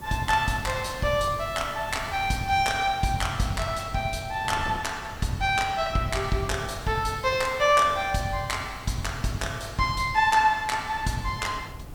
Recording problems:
background hiss; slope +3 dB per octave, SNR 26 dB
wind noise; below 310 Hz, SNR 17 dB

